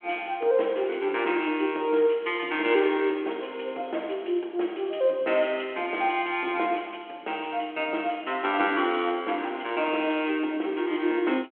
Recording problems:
telephone audio; 260 Hz to 3.4 kHz, G.726

